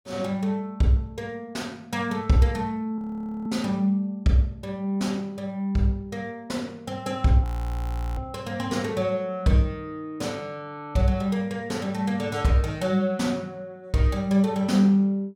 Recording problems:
frozen audio; at 3 s and at 7.5 s for 0.5 s

